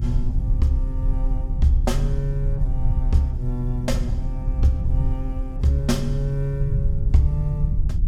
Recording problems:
electrical hum; 50 Hz, harmonics up to 350 Hz, SNR 20 dB
rumble; below 68 Hz, strongest tone 34 Hz, SNR 0 dB
wind on the microphone; below 86 Hz, SNR 15 dB

